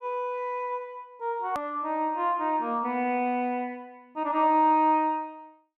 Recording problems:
edit click; at 1.5 s

